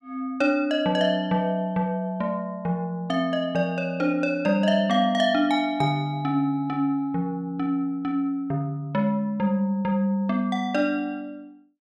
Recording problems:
none

